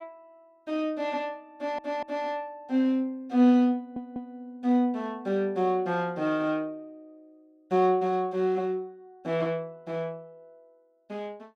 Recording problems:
audio stuttering; at 1.5 s and at 4 s

